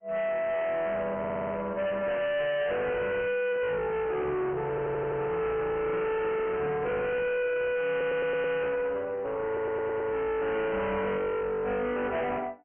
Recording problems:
treble cut off; nothing above 2.9 kHz
lossy codec; AAC, log-spectral distance 2 dB
distorted audio; hard clipping, uneven, signal-to-distortion ratio 6 dB
audio stuttering; 4 times, first at 1 s

